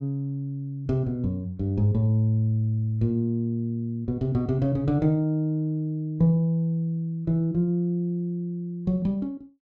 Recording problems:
none

